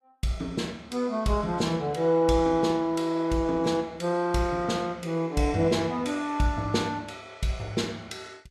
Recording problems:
lossy codec; Vorbis, log-spectral distance 2 dB, nothing above 12.3 kHz

